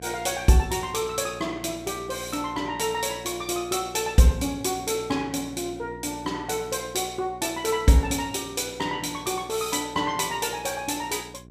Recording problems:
hum; 60 Hz, harmonics up to 720 Hz, SNR 20 dB

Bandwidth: 15.5 kHz